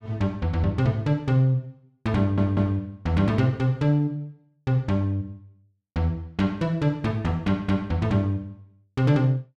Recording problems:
audio stuttering; at 2 s

